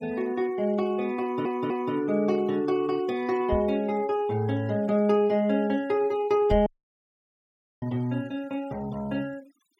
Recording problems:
denoising artefacts; signal-to-artefact ratio 25 dB
stutter; at 1 s
knock on the microphone; at 3.5 s and at 6.5 s; peak 0 dB vs average level
dropout; at 6.5 s for 1 s

